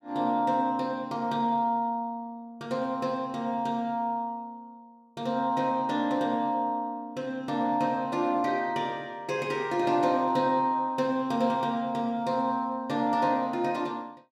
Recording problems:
none

